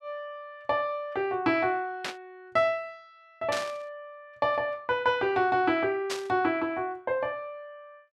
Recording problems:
static burst; at 2 s, at 3.5 s and at 6 s; peak -1 dB vs average level

